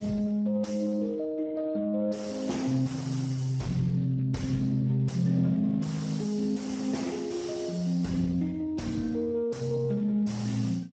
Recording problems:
lossy compression; Speex, log-spectral distance 4 dB, nothing above 7.8 kHz
distorted audio; soft clipping, signal-to-distortion ratio 7 dB

